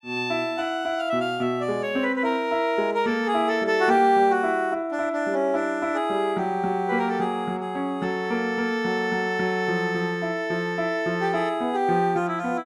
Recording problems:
none

